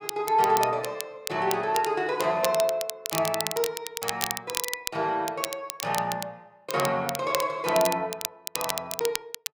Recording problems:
crackle; vinyl, SNR 6 dB

